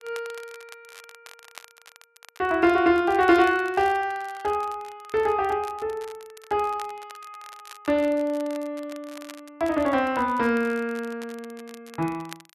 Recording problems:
crackling; vinyl, SNR 23 dB

